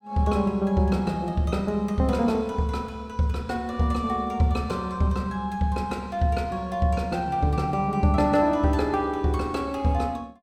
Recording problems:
none

